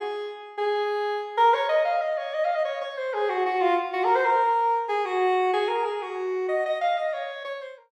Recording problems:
none

